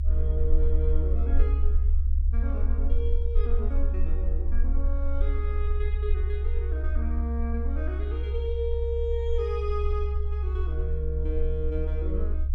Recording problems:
low-frequency rumble; below 68 Hz, SNR -8 dB

